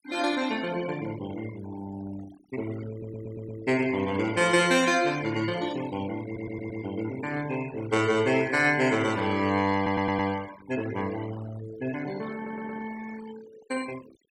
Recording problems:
denoising artefacts; signal-to-artefact ratio 17 dB
stutter; 4 times, first at 3 s

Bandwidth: 17 kHz